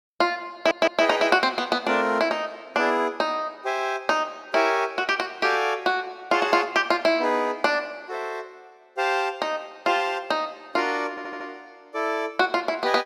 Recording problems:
stutter; at 0.5 s and at 11 s

